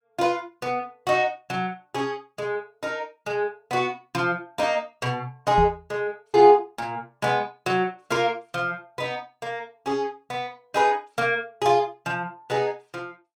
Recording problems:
knock on the microphone; at 5.5 s; peak +1 dB vs average level

